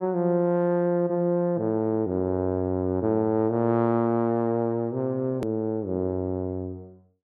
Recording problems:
hard cut with a click; at 5.5 s

